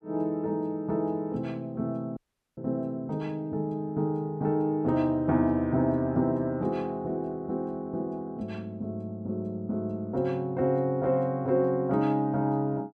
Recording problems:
audio cutting out; at 2 s

